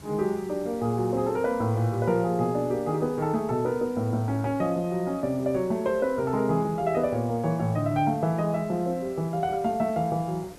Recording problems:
hiss; SNR 21 dB

